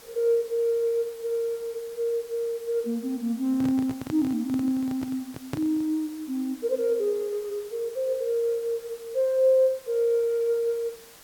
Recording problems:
hiss; slope -2 dB per octave, SNR 22 dB
microphone handling noise; from 3.5 to 6 s; peak -1 dB vs average level

